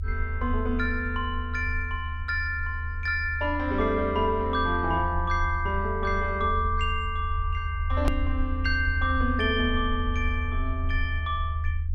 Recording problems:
low-frequency rumble; below 80 Hz, SNR 3 dB
edit click; at 8 s

